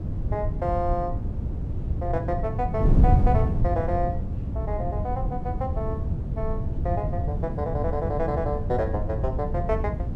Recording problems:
wind on the microphone; below 140 Hz, SNR -2 dB

